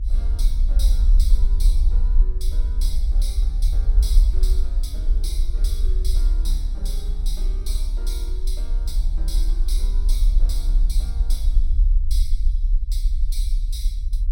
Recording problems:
hum; 60 Hz, harmonics up to 480 Hz, SNR 19 dB
rumble; below 46 Hz, strongest tone 32 Hz, SNR -15 dB

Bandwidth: 17 kHz